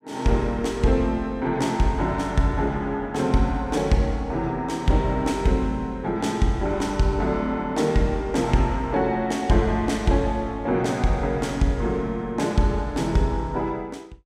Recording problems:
none

